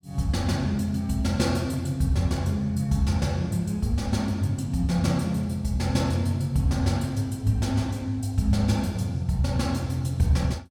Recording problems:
none

